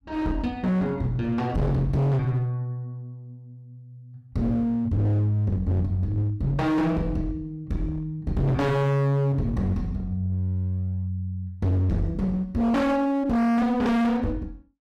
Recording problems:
distorted audio; hard clipping, uneven, signal-to-distortion ratio 5 dB

